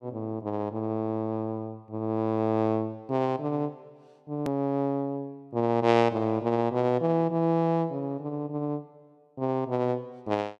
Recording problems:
edit click; at 4.5 s

